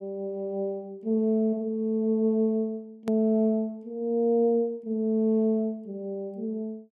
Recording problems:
edit click; at 3 s

